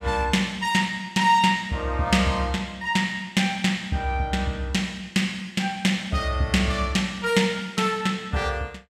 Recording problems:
none

